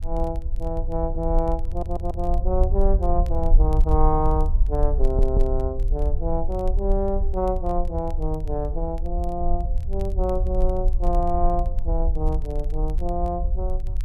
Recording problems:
rumble; below 52 Hz, SNR -1 dB
crackling; vinyl, SNR 30 dB
stutter; at 1.5 s and at 5 s

